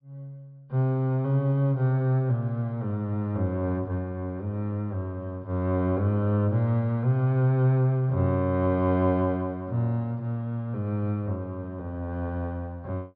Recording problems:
treble missing; nothing above 5.1 kHz

